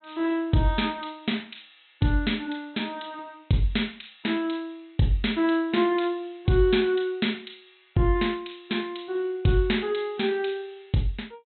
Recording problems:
low-pass filter; nothing above 4 kHz

